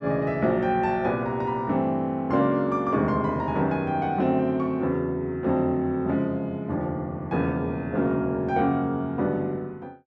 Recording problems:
none

